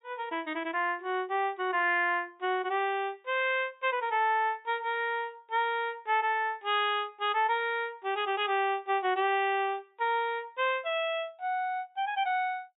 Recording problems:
treble missing; nothing above 4 kHz

